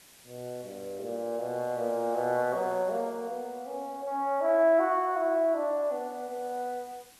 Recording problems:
background hiss; slope -1 dB per octave, SNR 25 dB

